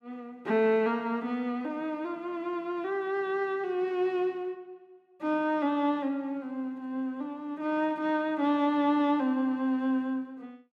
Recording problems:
none

